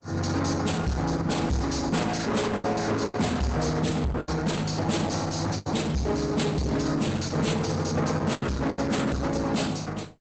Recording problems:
lossy compression; Opus, log-spectral distance 6 dB, nothing above 8 kHz
distorted audio; soft clipping, signal-to-distortion ratio 8 dB
lost packets; 5% of the sound replaced, filled with the last packet

